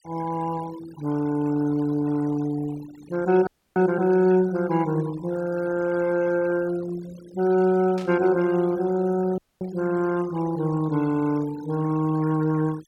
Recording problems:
noise reduction artefacts; signal-to-artefact ratio 19 dB
frozen audio; at 3.5 s and at 9.5 s
static burst; at 8 s; peak -13 dB vs average level

